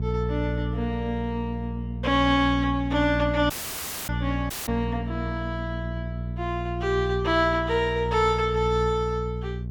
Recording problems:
mains hum; 60 Hz, harmonics up to 420 Hz, SNR 5 dB
dropout; at 3.5 s for 0.5 s and at 4.5 s

